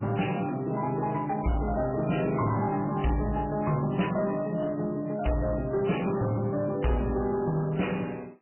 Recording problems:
lossy codec; MP3, log-spectral distance 5 dB, nothing above 3 kHz
distorted audio; soft clipping, signal-to-distortion ratio 11 dB

